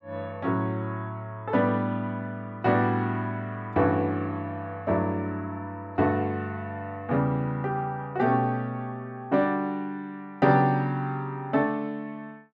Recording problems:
none

